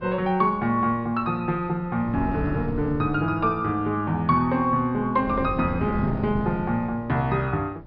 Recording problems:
treble cut off; nothing above 5.5 kHz
wind on the microphone; below 270 Hz, SNR 10 dB

